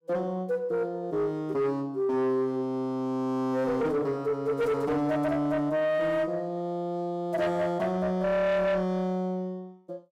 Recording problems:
distorted audio; soft clipping, signal-to-distortion ratio 10 dB

